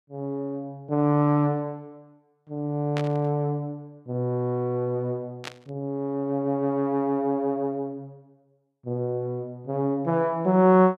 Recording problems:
burst of static; at 3 s and at 5.5 s; peak -4 dB vs average level

